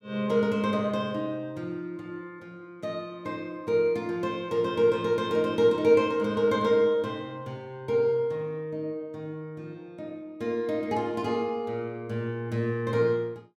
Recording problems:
none

